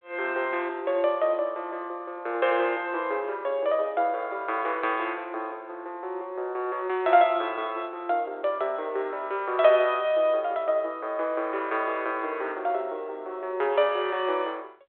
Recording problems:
phone line; 320 Hz to 3.6 kHz, G.726

